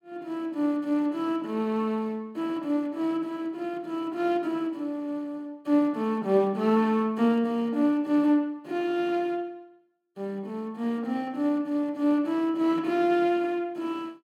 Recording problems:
none

